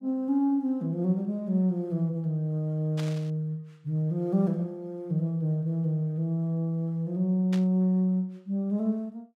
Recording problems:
static burst; at 3 s and at 7.5 s; peak -8 dB vs average level

